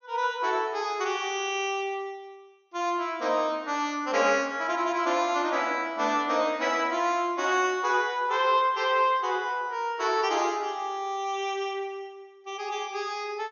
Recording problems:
low-pass filter; nothing above 6.6 kHz

